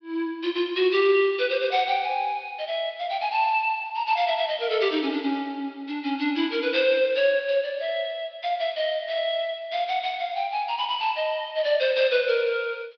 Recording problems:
treble missing; nothing above 5.5 kHz

